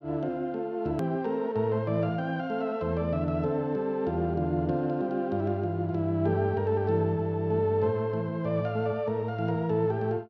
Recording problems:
hard cut with a click; at 1 s

